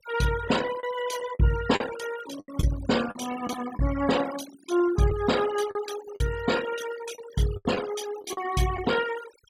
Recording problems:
noise reduction artefacts; signal-to-artefact ratio 11 dB
lost packets; 6% of the sound replaced, filled with the last packet

